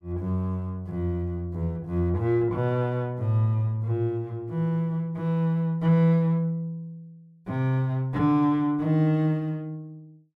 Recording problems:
none

